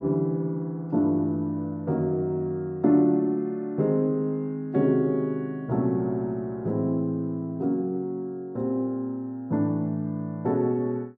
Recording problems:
none

